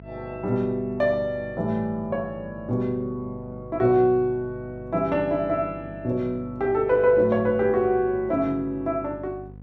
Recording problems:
electrical hum; 50 Hz, harmonics up to 750 Hz, SNR 19 dB

